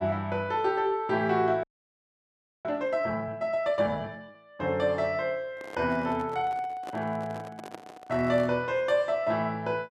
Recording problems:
frozen audio; at 1.5 s for 1 s
handling noise; from 5.5 to 8.5 s; peak -9 dB vs average level

